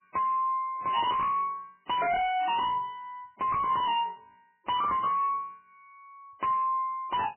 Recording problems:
lossy compression; MP3, log-spectral distance 3 dB, nothing above 3 kHz
distorted audio; hard clipping, signal-to-distortion ratio 5 dB

